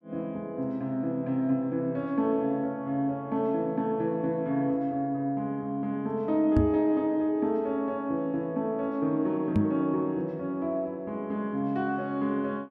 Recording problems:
microphone thump; at 6.5 s and at 9.5 s; peak +7 dB vs average level

